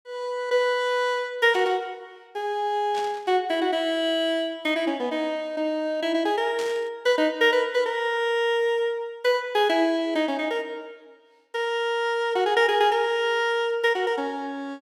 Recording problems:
static burst; at 1.5 s, at 3 s and at 6.5 s; peak -10 dB vs average level

